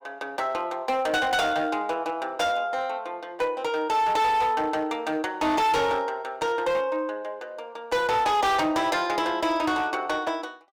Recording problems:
distortion; hard clipping, uneven, signal-to-distortion ratio 11 dB

